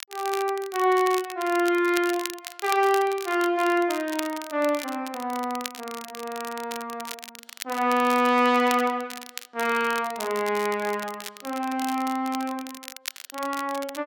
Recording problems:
crackling; vinyl, SNR 13 dB

